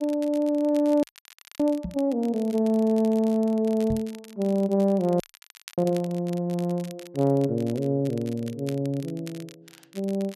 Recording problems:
crackle; vinyl, SNR 23 dB
frozen audio; at 1 s for 0.5 s and at 5 s for 0.5 s
microphone bump; at 2 s and at 4 s; peak -2 dB vs average level

